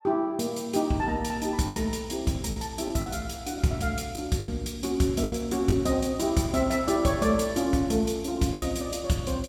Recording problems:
packet loss; 5% of the sound replaced, filled with the last packet

